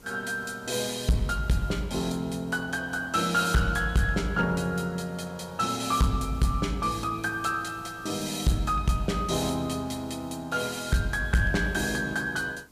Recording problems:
distorted audio; hard clipping, uneven, signal-to-distortion ratio 10 dB
background hiss; SNR 25 dB

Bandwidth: 15 kHz